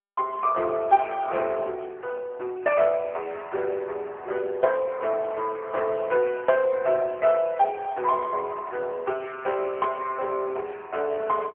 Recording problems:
telephone audio; 320 Hz to 3.2 kHz, AMR-NB

